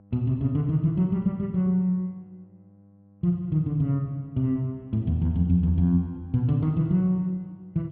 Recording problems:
hum; 50 Hz, harmonics up to 800 Hz, SNR 29 dB

